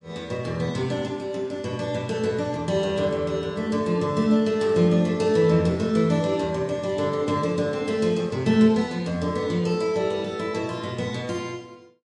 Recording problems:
lossy compression; MP3, log-spectral distance 2 dB, nothing above 11 kHz

